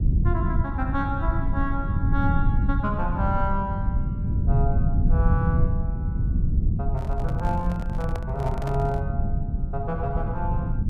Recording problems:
rumble; below 120 Hz, SNR -4 dB
microphone handling noise; from 7 to 9 s; peak -2 dB vs average level

